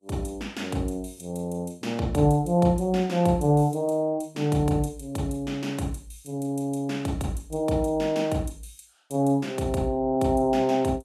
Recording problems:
lossy compression; Vorbis, log-spectral distance 2 dB, nothing above 13.1 kHz

